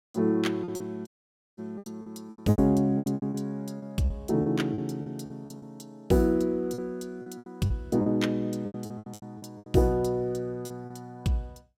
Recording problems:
lost packets; 15% of the sound replaced, filled with repeated pitch periods
audio cutting out; at 1 s for 0.5 s

